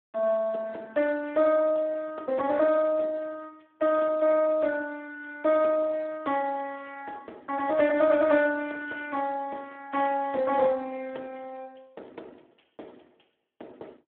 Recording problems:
telephone audio; 240 Hz to 2.8 kHz, Speex

